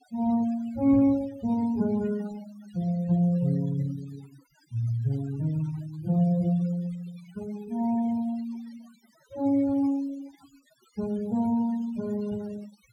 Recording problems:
noise reduction artefacts; signal-to-artefact ratio 21 dB

